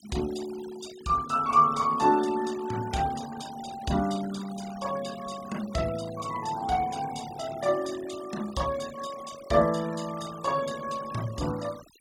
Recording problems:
noise reduction artefacts; signal-to-artefact ratio 17 dB

